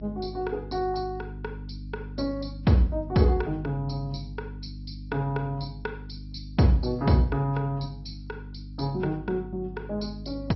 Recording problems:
low-pass filter; nothing above 5.6 kHz
codec artefacts; AAC, log-spectral distance 2 dB
mains hum; 50 Hz, harmonics up to 300 Hz, SNR 12 dB

